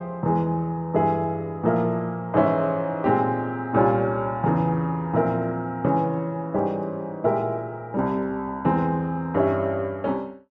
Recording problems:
none

